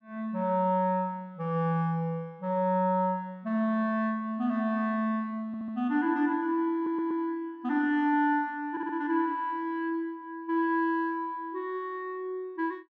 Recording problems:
audio stuttering; at 5.5 s, at 7 s and at 8.5 s

